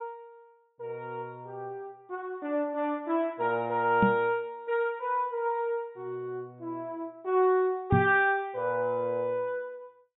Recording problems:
treble cut off; nothing above 4 kHz
knock on the microphone; at 4 s and at 8 s; peak +8 dB vs average level

